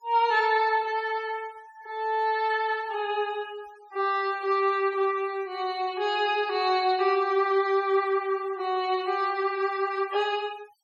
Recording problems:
denoising artefacts; signal-to-artefact ratio 24 dB

